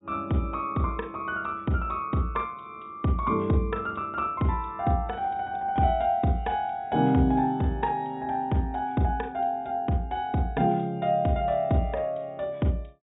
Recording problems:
treble missing; nothing above 4 kHz

